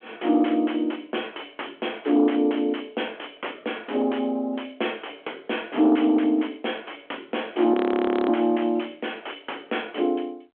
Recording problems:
telephone audio; 260 Hz to 3.3 kHz, G.726
distorted audio; soft clipping, signal-to-distortion ratio 10 dB
audio freezing; at 7.5 s for 0.5 s

